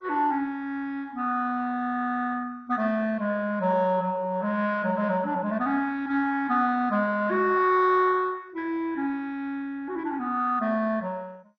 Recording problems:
lossy codec; MP2, log-spectral distance 3 dB, nothing above 5.7 kHz

